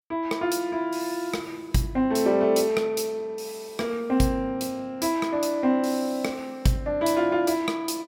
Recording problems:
none

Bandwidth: 16.5 kHz